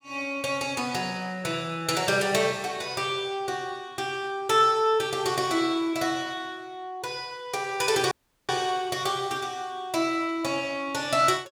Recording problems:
audio cutting out; at 8 s

